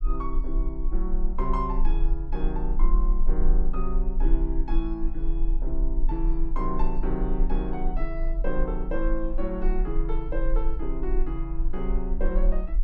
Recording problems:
rumble; below 34 Hz, strongest tone 18 Hz, SNR -3 dB

